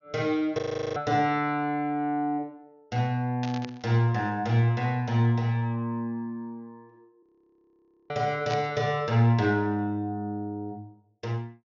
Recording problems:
low-pass filter; nothing above 6.8 kHz
frozen audio; at 0.5 s and at 7 s for 1 s
static burst; at 3.5 s and at 8.5 s; peak -7 dB vs average level

